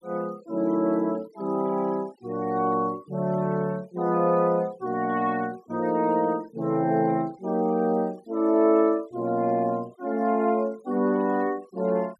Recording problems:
denoising artefacts; signal-to-artefact ratio 28 dB

